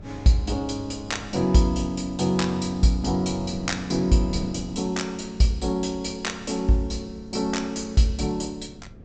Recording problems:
low-pass filter; nothing above 8 kHz
wind on the microphone; below 250 Hz, SNR 17 dB

